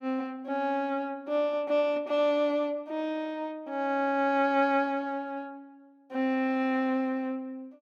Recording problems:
none

